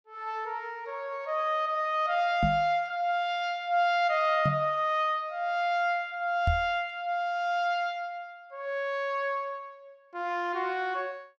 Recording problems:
knock on the microphone; at 2.5 s, at 4.5 s and at 6.5 s; peak +4 dB vs average level

